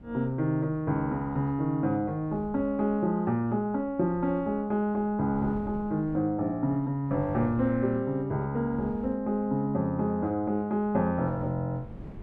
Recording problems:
wind on the microphone; below 250 Hz, SNR 19 dB

